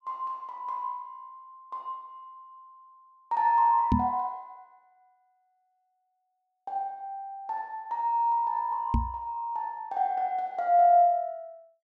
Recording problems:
microphone bump; at 4 s and at 9 s; peak +6 dB vs average level

